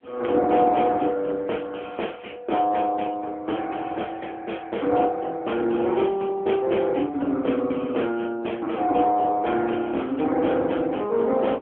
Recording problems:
phone line; 260 Hz to 3.3 kHz, AMR-NB

